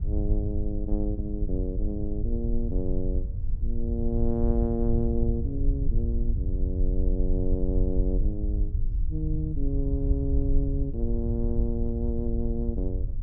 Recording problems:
rumble; below 66 Hz, SNR -2 dB

